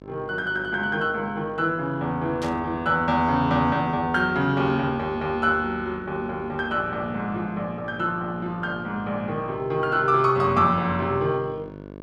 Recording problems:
electrical hum; 50 Hz, harmonics up to 1.7 kHz, SNR 17 dB
burst of static; at 2.5 s; peak -9 dB vs average level

